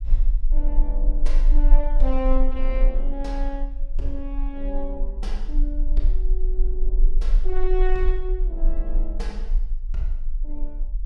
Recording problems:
low-frequency rumble; below 34 Hz, strongest tone 22 Hz, SNR -7 dB

